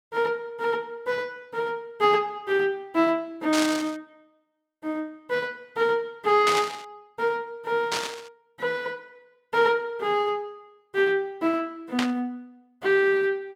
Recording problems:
static burst; 4 times, first at 3.5 s; peak +3 dB vs average level

